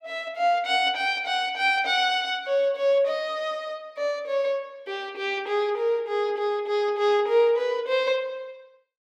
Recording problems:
none

